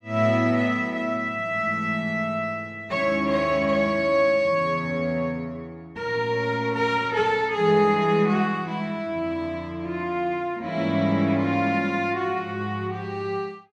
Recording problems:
none

